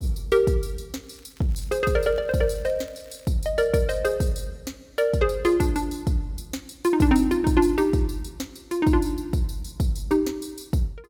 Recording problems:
crackle; from 1 to 3.5 s; loose cable, SNR 30 dB

